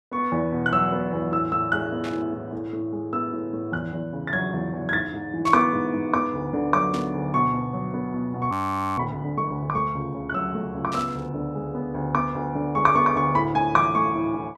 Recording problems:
static burst; 4 times, first at 2 s; peak -7 dB vs average level
audio freezing; at 8.5 s

